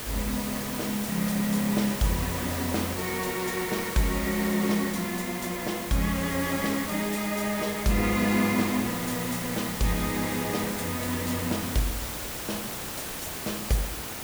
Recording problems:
background hiss; slope -3 dB per octave, SNR 5 dB

